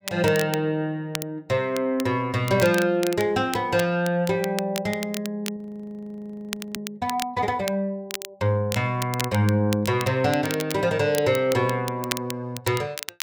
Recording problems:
crackling; vinyl, SNR 11 dB
audio freezing; at 5.5 s for 1 s

